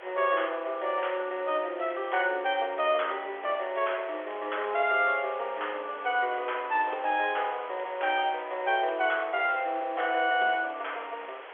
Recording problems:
telephone audio; 340 Hz to 3.4 kHz, G.711
hiss; SNR 16 dB

